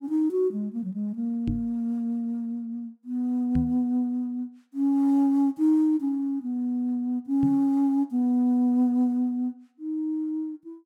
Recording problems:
microphone thump; at 1.5 s, at 3.5 s and at 7.5 s; peak 0 dB vs average level

